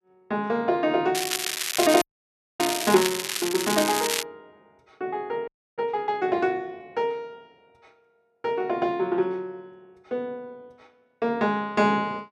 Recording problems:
crackle; from 1 to 4 s; loose cable, SNR 2 dB
audio freezing; at 2 s for 0.5 s and at 5.5 s

